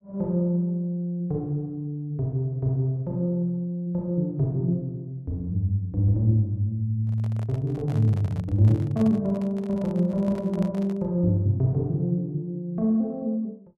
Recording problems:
microphone handling noise; from 7 to 11 s; peak -10 dB vs average level

